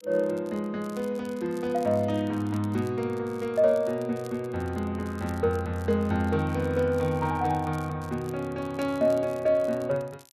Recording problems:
crackle; vinyl, SNR 26 dB

